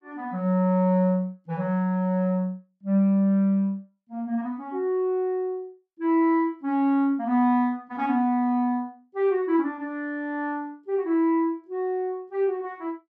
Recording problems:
none

